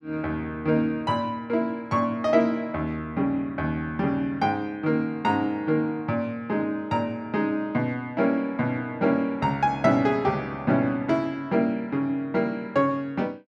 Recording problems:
none

